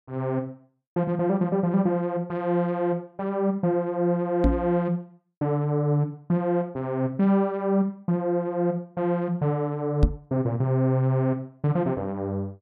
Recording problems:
microphone bump; at 4.5 s and at 10 s; peak +9 dB vs average level

